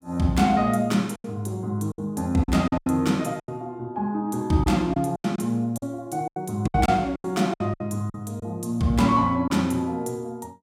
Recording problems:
packet loss; 10% of the sound replaced, filled with silence

